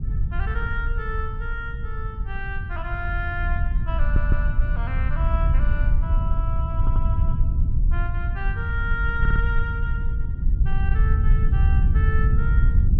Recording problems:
low-frequency rumble; below 76 Hz, SNR -8 dB
audio stuttering; at 4 s, at 7 s and at 9 s

